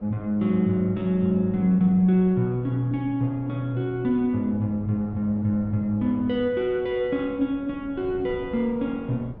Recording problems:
wind noise; below 340 Hz, SNR 20 dB

